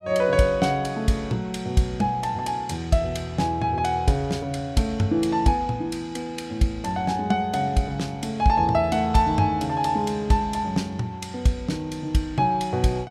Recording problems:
none

